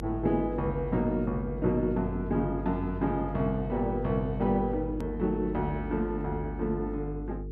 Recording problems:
hum; 50 Hz, harmonics up to 450 Hz, SNR 8 dB
click at an edit; at 5 s

